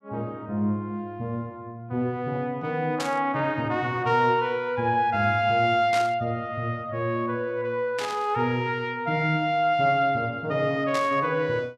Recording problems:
burst of static; 4 times, first at 3 s; peak -3 dB vs average level

